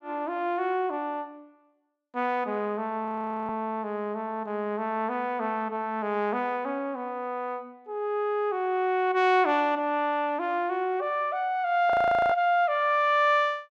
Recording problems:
frozen audio; at 3 s and at 12 s

